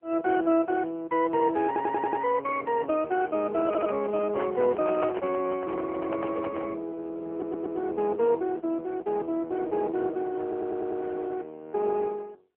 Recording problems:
phone line; 280 Hz to 2.8 kHz, AMR-NB
stutter; 4 times, first at 1.5 s
handling noise; from 3.5 to 6.5 s; peak -2 dB vs average level

